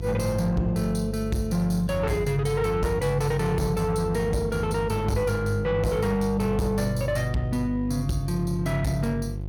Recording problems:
distortion; soft clipping, signal-to-distortion ratio 10 dB
hum; 50 Hz, harmonics up to 550 Hz, SNR 7 dB

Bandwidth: 17.5 kHz